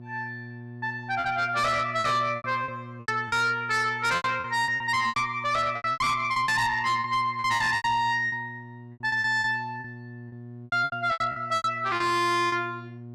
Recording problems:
distorted audio; soft clipping, signal-to-distortion ratio 8 dB
hum; 60 Hz, harmonics up to 720 Hz, SNR 17 dB
lost packets; 15% of the sound replaced, filled with repeated pitch periods

